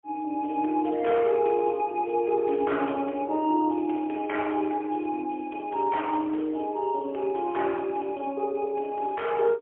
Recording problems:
phone line; 260 Hz to 3.3 kHz, AMR-NB, then MP3

